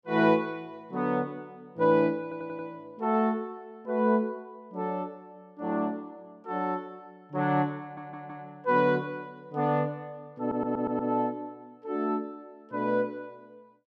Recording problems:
audio stuttering; at 2 s, at 8 s and at 10 s

